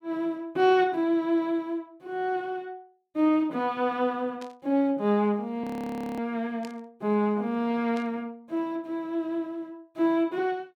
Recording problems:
burst of static; at 4.5 s, at 6.5 s and at 8 s; peak -13 dB vs average level
frozen audio; at 5.5 s for 0.5 s

